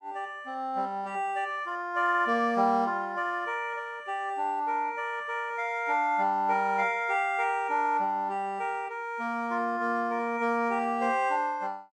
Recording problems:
none

